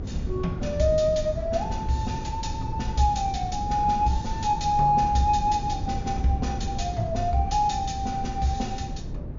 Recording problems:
treble missing; nothing above 7.1 kHz
low-frequency rumble; below 150 Hz, SNR 7 dB

